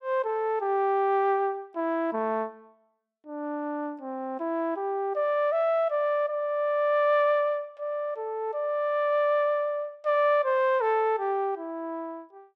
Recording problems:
none

